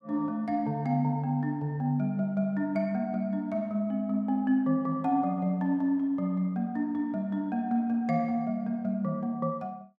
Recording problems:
none

